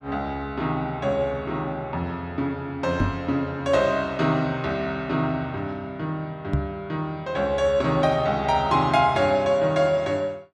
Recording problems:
knock on the microphone; at 3 s and at 6.5 s; peak +4 dB vs average level

